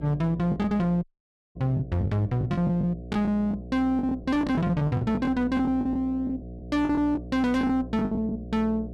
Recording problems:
distortion; hard clipping, uneven, signal-to-distortion ratio 10 dB
hum; 60 Hz, harmonics up to 720 Hz, SNR 14 dB
packet loss; 13% of the sound replaced, filled with the last packet
dropout; at 1 s for 0.5 s

